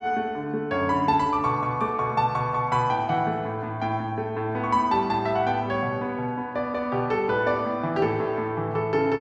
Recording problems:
none

